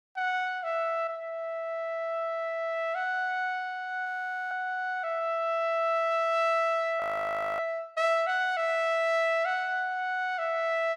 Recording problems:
audio freezing; at 4 s and at 7 s for 0.5 s

